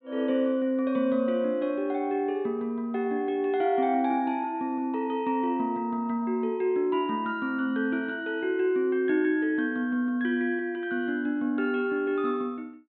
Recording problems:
treble cut off; nothing above 4 kHz

